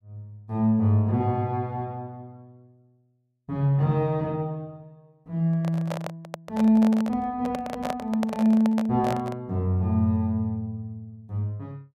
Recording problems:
handling noise; from 5.5 to 9.5 s; peak -2 dB vs average level

